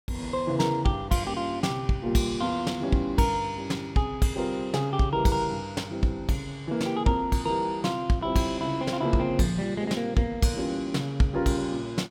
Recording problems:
none

